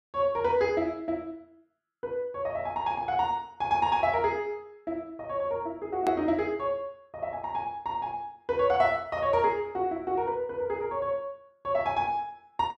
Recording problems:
hard cut with a click; at 6 s

